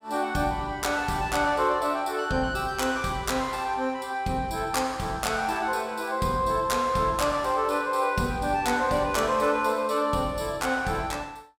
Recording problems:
none

